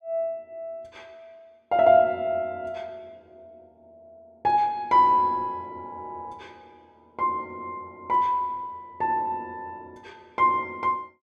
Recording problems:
none

